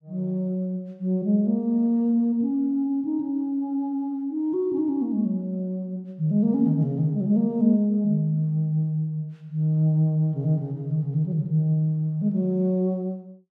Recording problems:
none

